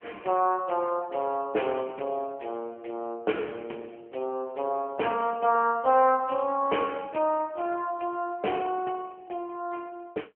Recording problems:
phone line; 260 Hz to 3.2 kHz, AMR-NB

